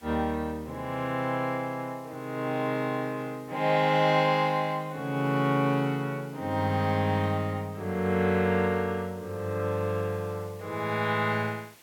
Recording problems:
hiss; slope -1 dB per octave, SNR 26 dB

